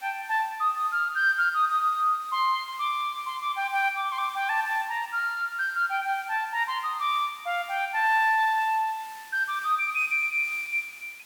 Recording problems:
background hiss; SNR 22 dB

